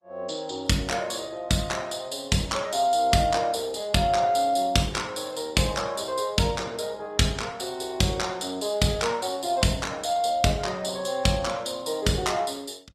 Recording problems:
lossy compression; Opus, log-spectral distance 4 dB, nothing above 14.3 kHz

